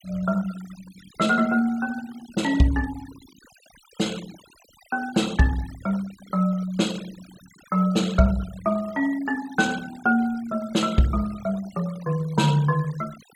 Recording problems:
denoising artefacts; signal-to-artefact ratio 20 dB

